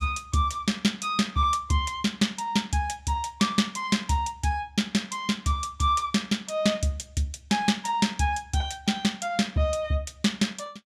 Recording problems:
none

